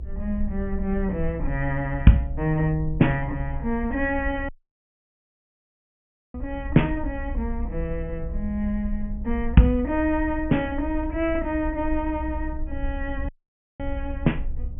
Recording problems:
low-pass filter; nothing above 3.1 kHz
rumble; below 64 Hz, SNR 8 dB
dropout; at 4.5 s for 2 s and at 13 s for 0.5 s

